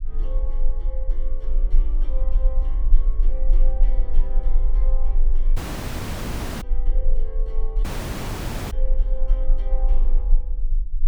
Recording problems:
rumble; below 34 Hz, strongest tone 20 Hz, SNR -17 dB
audio cutting out; at 5.5 s for 1 s and at 8 s for 1 s

